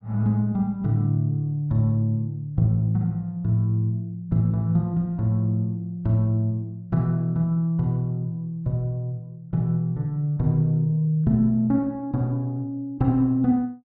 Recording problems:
none

